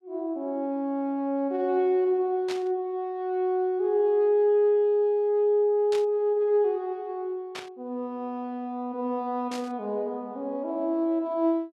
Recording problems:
static burst; 4 times, first at 2.5 s; peak -7 dB vs average level

